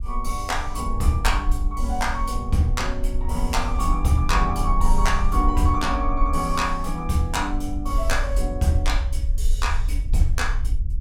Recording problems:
low-frequency rumble; below 52 Hz, SNR 2 dB

